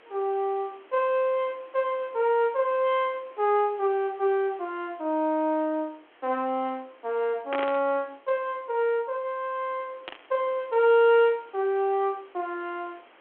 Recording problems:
phone line; 280 Hz to 3.6 kHz, G.726
hiss; SNR 28 dB
static burst; at 7.5 s and at 10 s; peak -4 dB vs average level

